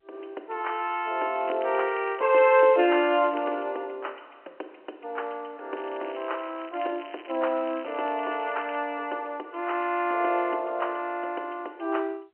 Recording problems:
phone line; 300 Hz to 3.1 kHz, G.711
crackling; from 1.5 to 3.5 s and from 6 to 9 s; loose cable, SNR 21 dB

